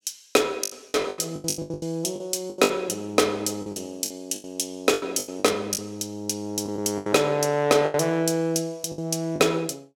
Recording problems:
lost packets; 15% of the sound replaced, filled with the last packet

